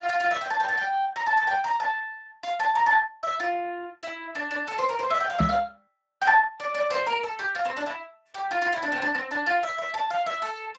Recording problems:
codec artefacts; Speex, log-spectral distance 4 dB, nothing above 7.3 kHz
knock on the microphone; at 5.5 s; peak +6 dB vs average level

